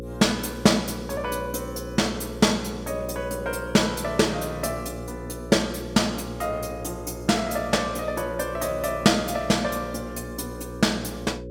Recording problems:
hum; 60 Hz, harmonics up to 540 Hz, SNR 11 dB

